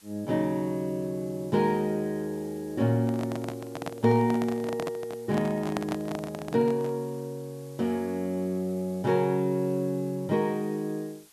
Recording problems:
hiss; slope +1 dB per octave, SNR 25 dB
microphone handling noise; from 3 to 7 s; peak +1 dB vs average level

